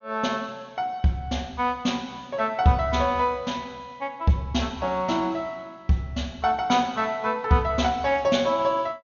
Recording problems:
treble missing; nothing above 6.8 kHz

